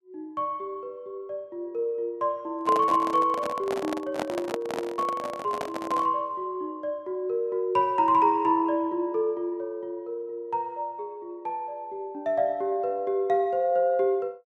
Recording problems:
handling noise; from 2.5 to 6 s; peak 0 dB vs average level

